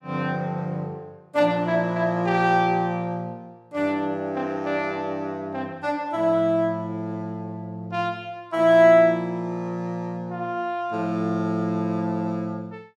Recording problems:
none

